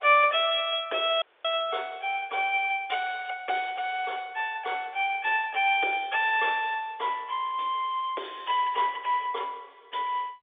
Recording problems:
phone line; 320 Hz to 3.6 kHz, G.711
audio cutting out; at 1 s

